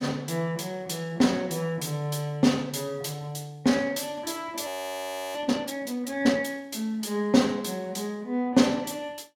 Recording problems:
audio freezing; at 4.5 s for 0.5 s

